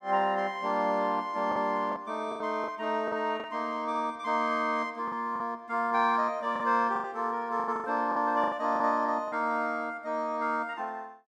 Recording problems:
packet loss; 8% of the sound replaced, filled with the last packet

